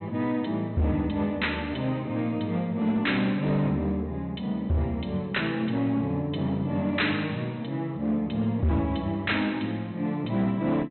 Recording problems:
low-pass filter; nothing above 4.1 kHz
distorted audio; hard clipping, signal-to-distortion ratio 11 dB

